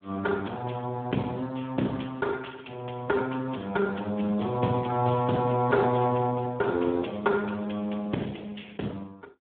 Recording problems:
telephone audio; 170 Hz to 2.2 kHz, Speex

